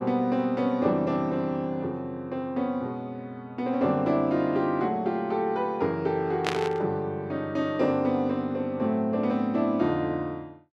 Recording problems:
static burst; at 6.5 s; peak +2 dB vs average level

